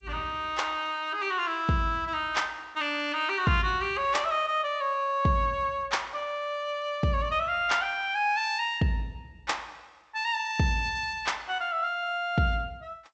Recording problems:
codec artefacts; G.722, log-spectral distance 2 dB

